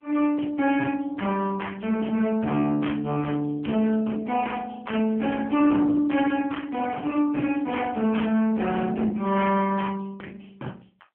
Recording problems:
phone line; 150 Hz to 3.2 kHz, AMR-NB
distorted audio; hard clipping, uneven, signal-to-distortion ratio 13 dB

